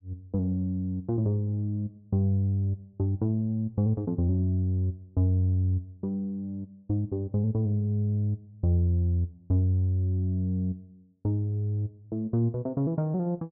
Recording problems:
none

